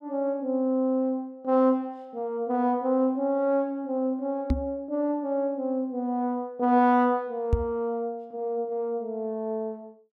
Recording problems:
microphone thump; at 4.5 s and at 7.5 s; peak +7 dB vs average level

